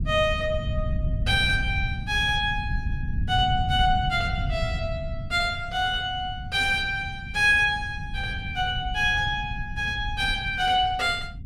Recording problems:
low-frequency rumble; below 120 Hz, SNR 8 dB

